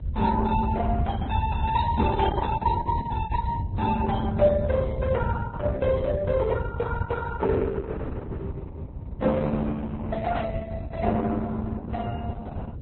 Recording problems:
lossy compression; Opus, then Vorbis, log-spectral distance 3 dB, nothing above 4 kHz
hum; 50 Hz, harmonics up to 650 Hz, SNR 22 dB
low-frequency rumble; below 98 Hz, SNR 0 dB

